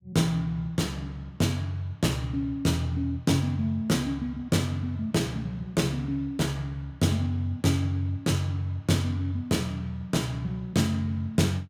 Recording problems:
none

